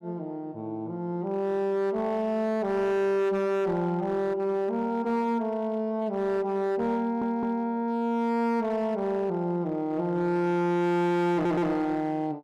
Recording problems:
distorted audio; hard clipping, signal-to-distortion ratio 11 dB
stutter; at 7 s and at 11 s

